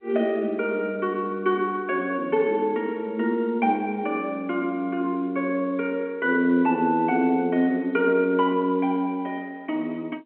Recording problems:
phone line; 220 Hz to 3.1 kHz, G.711

